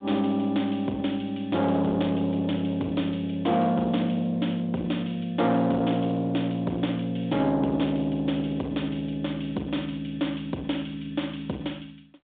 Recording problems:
telephone audio; 190 Hz to 3.6 kHz, G.726
distorted audio; soft clipping, signal-to-distortion ratio 12 dB

